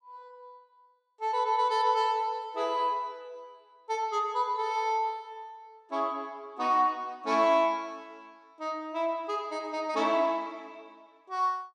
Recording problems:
none

